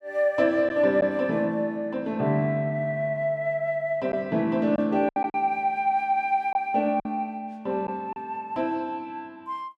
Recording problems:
lost packets; 3% of the sound replaced, filled with silence

